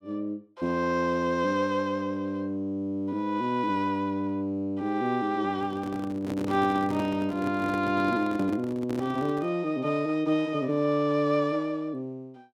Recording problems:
microphone handling noise; from 5.5 to 9.5 s; peak -3 dB vs average level

